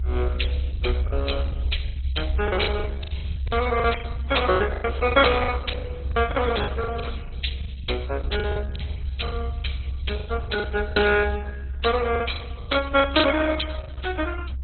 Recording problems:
lossy compression; MP3, then Opus, log-spectral distance 4 dB, nothing above 4.1 kHz
rumble; below 72 Hz, strongest tone 66 Hz, SNR 3 dB
lost packets; 13% of the sound replaced, filled with the last packet

